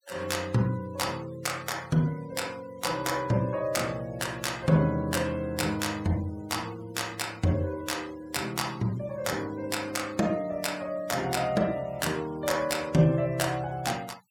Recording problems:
denoising artefacts; signal-to-artefact ratio 21 dB

